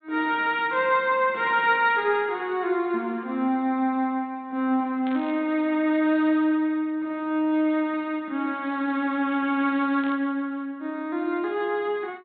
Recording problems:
treble missing; nothing above 4 kHz
burst of static; at 5 s and at 10 s; peak -14 dB vs average level

